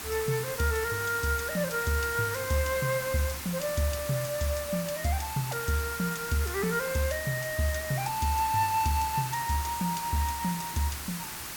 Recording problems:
background hiss; SNR 6 dB

